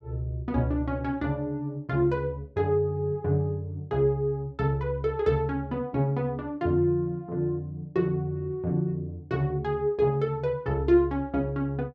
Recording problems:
none

